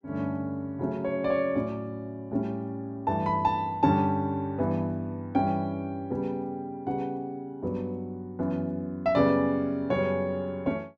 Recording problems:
none

